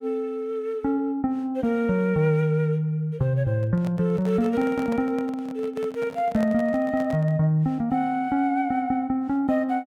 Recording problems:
microphone handling noise; from 3.5 to 7.5 s; peak -6 dB vs average level

